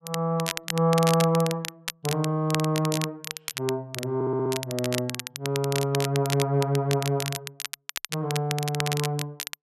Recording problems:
crackle; vinyl, SNR 7 dB
audio stuttering; at 4 s

